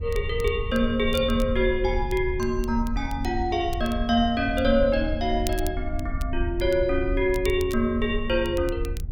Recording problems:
rumble; below 80 Hz, SNR 7 dB
crackle; vinyl, SNR 20 dB

